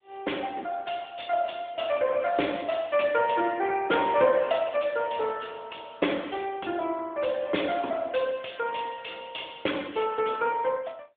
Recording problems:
phone line; 240 Hz to 3.6 kHz, AMR-NB

